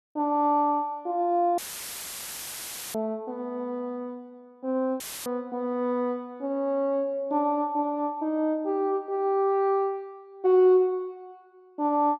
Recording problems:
dropout; at 1.5 s for 1.5 s and at 5 s; filled with static

